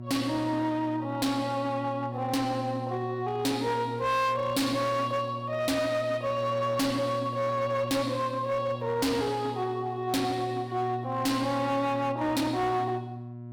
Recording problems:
distorted audio; hard clipping, signal-to-distortion ratio 7 dB
electrical hum; 60 Hz, harmonics up to 720 Hz, SNR 10 dB

